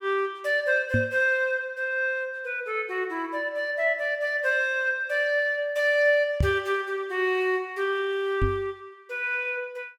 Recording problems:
microphone bump; at 1 s, at 6.5 s and at 8.5 s; peak +5 dB vs average level

